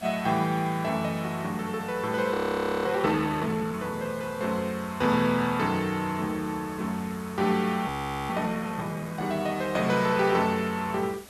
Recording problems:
background hiss; slope -3 dB per octave, SNR 20 dB
frozen audio; at 2.5 s for 0.5 s and at 8 s

